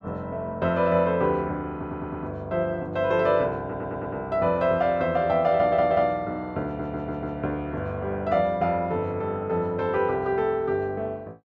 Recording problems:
audio stuttering; 4 times, first at 1.5 s

